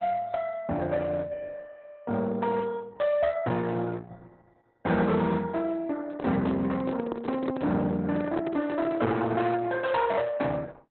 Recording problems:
codec artefacts; Opus, log-spectral distance 3 dB, nothing above 4 kHz
distortion; hard clipping, uneven, signal-to-distortion ratio 11 dB
microphone handling noise; from 6 to 9 s; peak 0 dB vs average level

